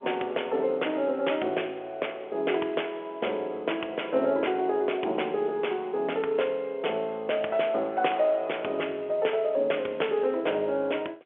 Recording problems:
phone line; 320 Hz to 3.4 kHz, G.711

